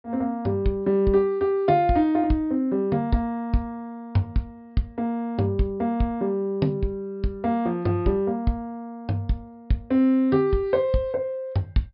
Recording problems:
treble cut off; nothing above 5.5 kHz

